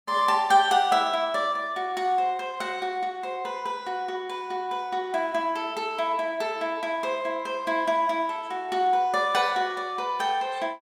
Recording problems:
none

